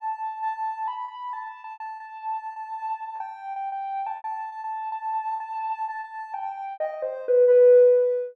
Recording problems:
lost packets; 10% of the sound replaced, filled with repeated pitch periods

